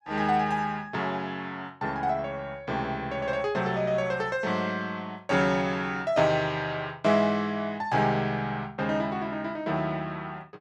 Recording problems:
none

